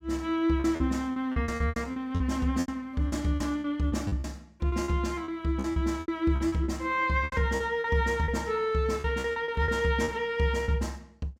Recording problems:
packet loss; 15% of the sound replaced, filled with repeated pitch periods

